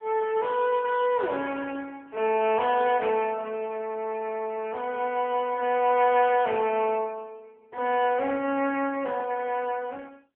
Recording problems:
phone line; 300 Hz to 3.4 kHz, AMR-NB

